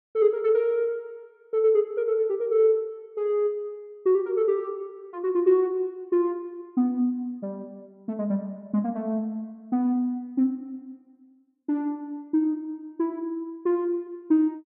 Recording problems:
none

